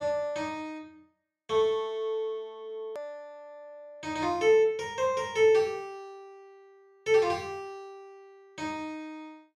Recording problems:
edit click; at 3 s

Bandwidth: 13 kHz